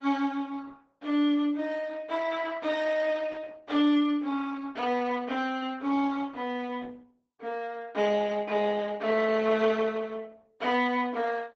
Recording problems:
lossy codec; Opus, log-spectral distance 3 dB

